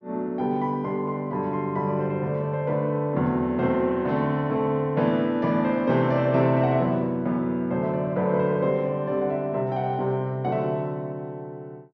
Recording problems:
low-pass filter; nothing above 6.4 kHz

